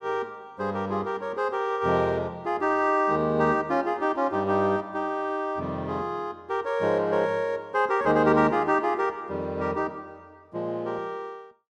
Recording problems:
none

